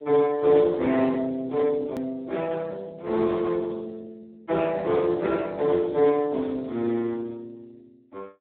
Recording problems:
phone line; 280 Hz to 2.1 kHz, Speex
edit click; at 2 s

